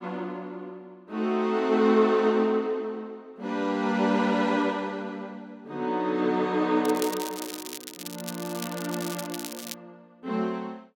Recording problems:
crackling; from 7 to 9.5 s; loose cable, SNR 11 dB

